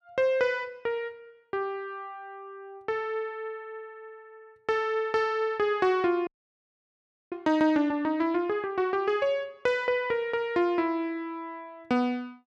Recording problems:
audio freezing; at 6.5 s for 1 s

